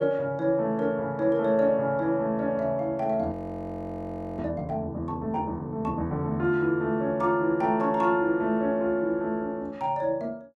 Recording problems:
frozen audio; at 3.5 s for 1 s

